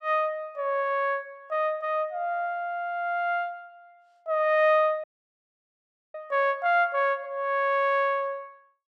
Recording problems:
audio cutting out; at 5 s for 1 s

